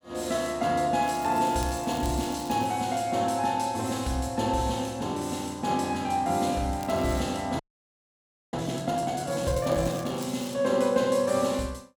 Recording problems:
crackling; from 1 to 2.5 s, at 7 s and from 9.5 to 11 s; loose cable, SNR 19 dB
frozen audio; at 7.5 s for 1 s

